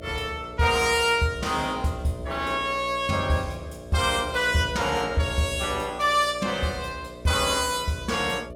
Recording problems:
electrical hum; 60 Hz, harmonics up to 660 Hz, SNR 15 dB

